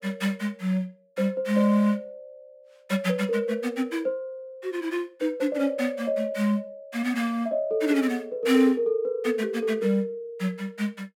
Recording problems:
none

